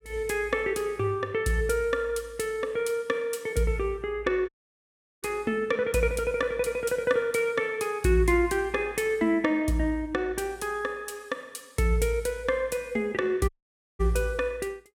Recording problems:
dropout; at 4.5 s for 0.5 s and at 13 s for 0.5 s

